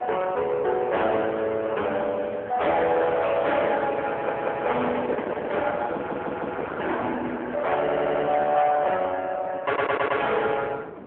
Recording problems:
telephone audio; 340 Hz to 3.4 kHz, AMR-NB
distortion; hard clipping, uneven, signal-to-distortion ratio 9 dB
wind on the microphone; below 880 Hz, SNR 12 dB
stutter; 4 times, first at 4 s

